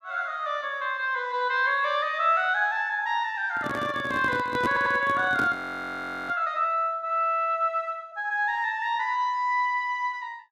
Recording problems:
handling noise; from 3.5 to 6.5 s; peak 0 dB vs average level
audio stuttering; at 4.5 s
audio freezing; at 5.5 s for 0.5 s

